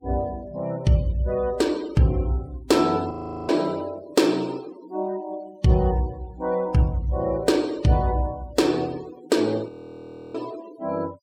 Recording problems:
noise reduction artefacts; signal-to-artefact ratio 22 dB
audio freezing; at 3 s and at 9.5 s for 0.5 s

